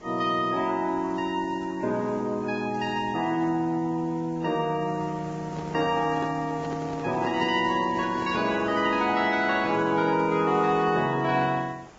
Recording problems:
lossy compression; Vorbis, then AAC, log-spectral distance 4 dB
hiss; slope -6 dB per octave, SNR 20 dB
handling noise; from 5.5 to 8.5 s; peak -5 dB vs average level

